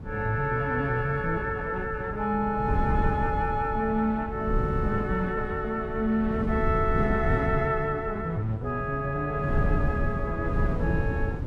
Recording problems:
wind on the microphone; below 170 Hz, SNR 4 dB

